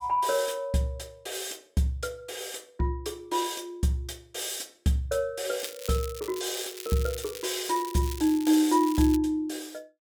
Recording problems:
crackle; from 5.5 to 9 s; loose cable, SNR 12 dB

